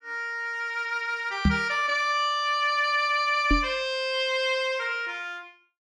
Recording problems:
knock on the microphone; at 1.5 s and at 3.5 s; peak +7 dB vs average level

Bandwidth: 14.5 kHz